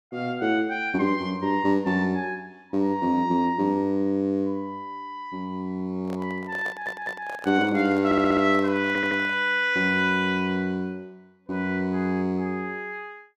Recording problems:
handling noise; from 6 to 9.5 s; peak -10 dB vs average level
audio stuttering; at 6.5 s, at 8 s and at 9 s

